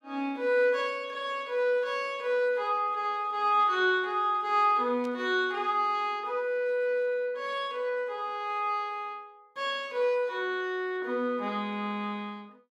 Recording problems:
static burst; at 5 s; peak -16 dB vs average level

